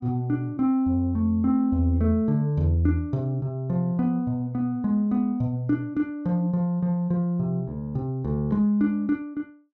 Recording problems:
none

